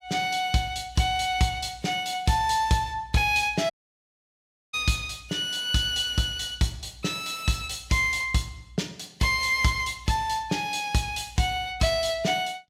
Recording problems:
dropout; at 3.5 s for 1 s

